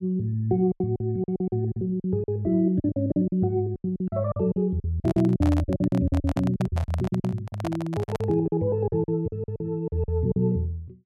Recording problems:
lost packets; 17% of the sound replaced, filled with silence
microphone handling noise; from 5 to 8.5 s; peak -3 dB vs average level

